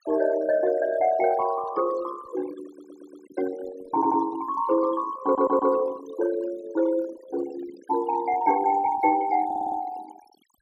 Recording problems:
noise reduction artefacts; signal-to-artefact ratio 18 dB
stutter; 4 times, first at 2.5 s

